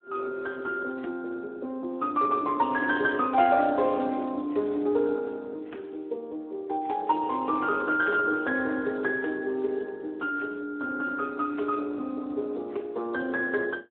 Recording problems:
phone line; 240 Hz to 2.8 kHz, Speex

